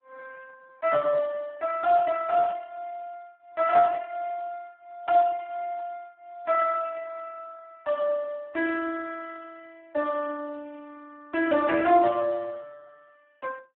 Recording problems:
telephone audio; 110 Hz to 2 kHz, Speex

